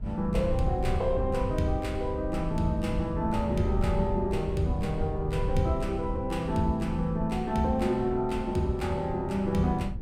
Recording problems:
wind on the microphone; below 100 Hz, SNR 6 dB

